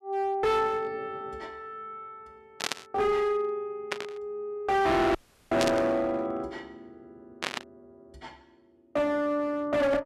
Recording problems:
distorted audio; hard clipping, uneven, signal-to-distortion ratio 6 dB
static burst; 4 times, first at 2.5 s; peak +4 dB vs average level
dropout; at 5 s

